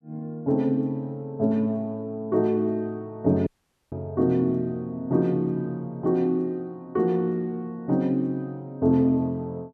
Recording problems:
dropout; at 3.5 s

